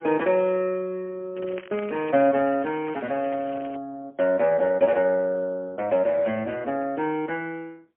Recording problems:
phone line; 190 Hz to 3.1 kHz, AMR-NB, then MP3
crackling; from 1.5 to 4 s; loose cable, SNR 23 dB

